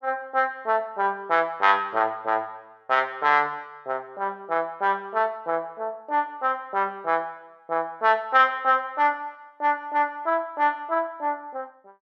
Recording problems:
none

